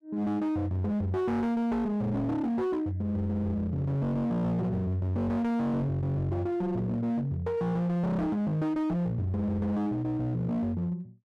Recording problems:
distortion; hard clipping, signal-to-distortion ratio 8 dB

